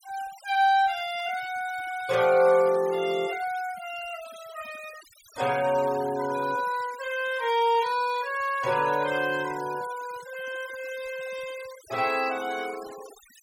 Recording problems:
noise reduction artefacts; signal-to-artefact ratio 18 dB

